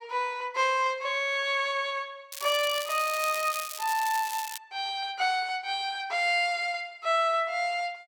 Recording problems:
crackling; from 2.5 to 4.5 s; loose cable, SNR 9 dB

